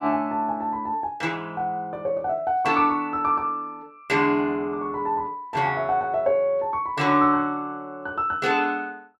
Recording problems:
none

